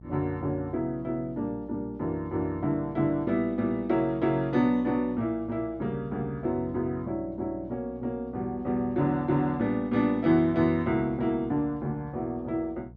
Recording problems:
hum; 60 Hz, harmonics up to 480 Hz, SNR 20 dB

